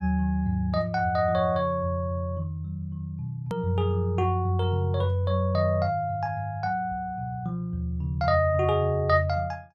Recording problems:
click at an edit; at 3.5 s

